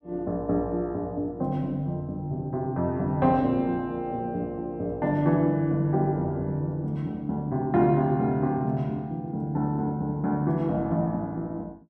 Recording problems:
none

